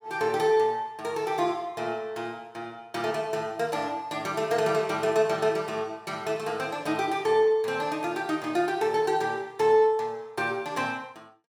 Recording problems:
none

